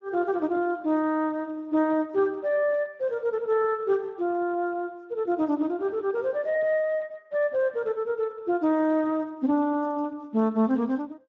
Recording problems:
lossy compression; Speex, log-spectral distance 2 dB

